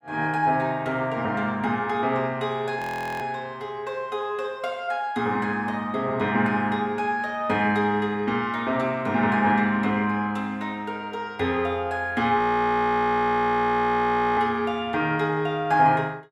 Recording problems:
frozen audio; at 3 s and at 12 s for 2 s

